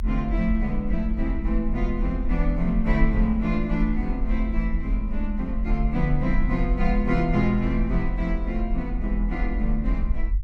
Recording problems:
low-frequency rumble; below 44 Hz, SNR 2 dB

